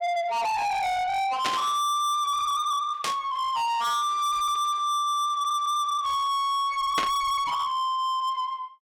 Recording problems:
distorted audio; soft clipping, signal-to-distortion ratio 6 dB
static burst; at 1.5 s, at 3 s and at 7 s; peak +2 dB vs average level

